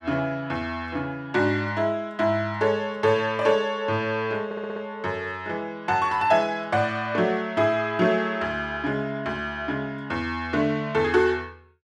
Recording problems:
audio stuttering; at 4.5 s

